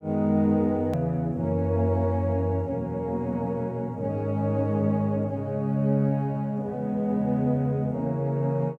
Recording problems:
click at an edit; at 1 s

